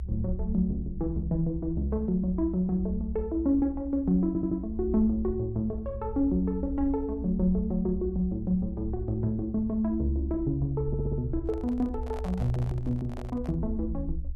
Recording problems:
rumble; below 68 Hz, SNR 9 dB
stutter; at 4.5 s and at 11 s
microphone handling noise; from 11 to 14 s; peak -10 dB vs average level

